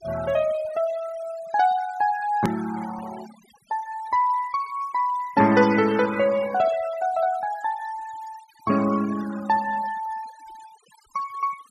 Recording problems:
denoising artefacts; signal-to-artefact ratio 17 dB
click at an edit; at 2.5 s

